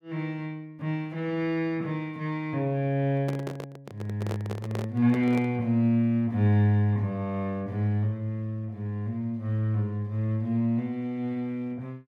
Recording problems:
handling noise; from 3 to 5.5 s; peak -3 dB vs average level

